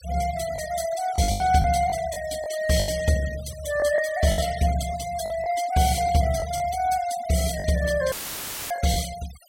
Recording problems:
noise reduction artefacts; signal-to-artefact ratio 14 dB
packet loss; 7% of the sound replaced, filled with the last packet
dropout; at 8 s for 0.5 s; filled with static

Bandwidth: 16.5 kHz